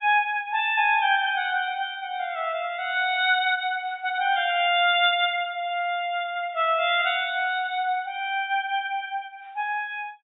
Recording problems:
lossy compression; AAC, log-spectral distance 2 dB, nothing above 3.2 kHz

